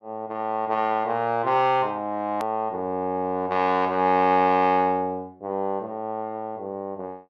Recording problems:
click at an edit; at 2.5 s

